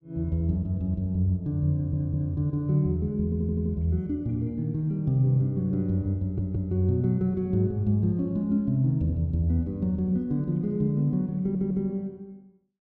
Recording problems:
stutter; 4 times, first at 1.5 s

